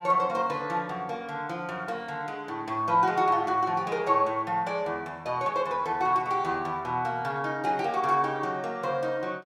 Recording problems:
none

